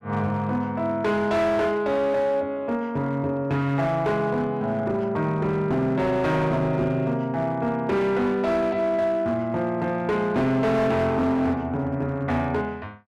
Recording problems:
distortion; hard clipping, signal-to-distortion ratio 12 dB

